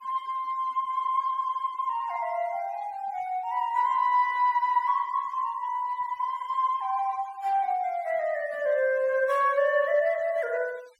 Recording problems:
denoising artefacts; signal-to-artefact ratio 27 dB

